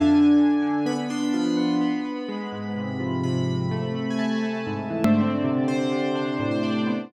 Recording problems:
edit click; at 5 s

